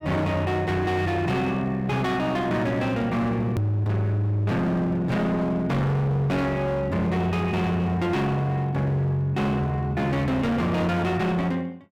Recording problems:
distortion; hard clipping, signal-to-distortion ratio 8 dB
hard cut with a click; at 3.5 s

